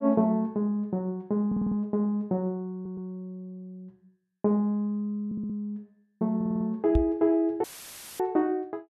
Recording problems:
audio stuttering; 4 times, first at 1.5 s
microphone thump; at 7 s; peak +6 dB vs average level
dropout; at 7.5 s for 0.5 s; filled with static

